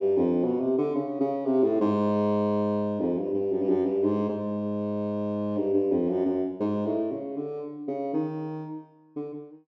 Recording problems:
none

